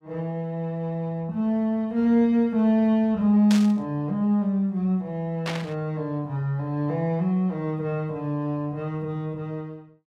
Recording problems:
static burst; at 3.5 s and at 5.5 s; peak -2 dB vs average level

